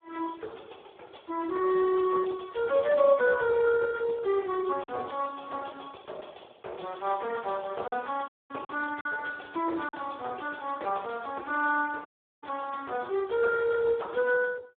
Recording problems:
phone line; 300 Hz to 2.2 kHz, Speex
packet loss; 1.4% of the sound replaced, filled with silence
audio cutting out; at 8.5 s and at 12 s

